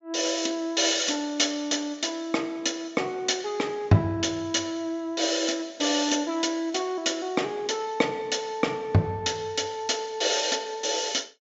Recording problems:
low-pass filter; nothing above 8 kHz

